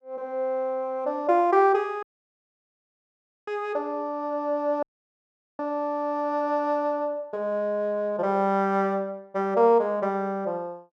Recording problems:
dropout; at 2 s for 1.5 s and at 5 s for 1 s

